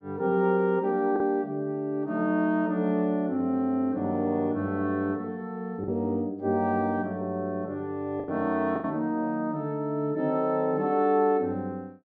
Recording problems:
lost packets; 2% of the sound replaced, filled with the last packet

